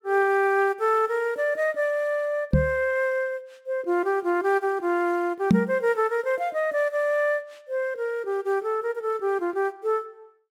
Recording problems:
microphone thump; at 2.5 s and at 5.5 s; peak +9 dB vs average level

